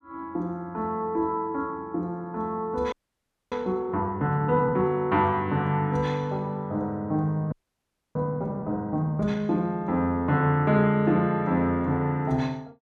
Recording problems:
audio freezing; at 3 s for 0.5 s and at 7.5 s for 0.5 s

